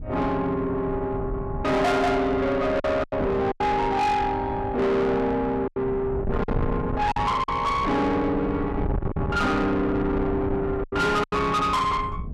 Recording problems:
distorted audio; soft clipping, signal-to-distortion ratio 8 dB
wind on the microphone; below 280 Hz, SNR 8 dB
lost packets; 5% of the sound replaced, filled with silence

